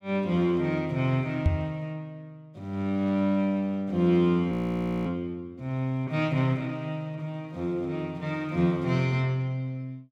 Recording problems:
microphone bump; at 1.5 s; peak +8 dB vs average level
frozen audio; at 4.5 s for 0.5 s

